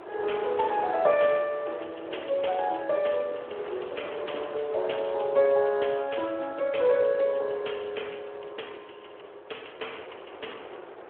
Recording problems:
telephone audio; 300 Hz to 3.3 kHz, Speex
wind on the microphone; below 1 kHz, SNR 15 dB

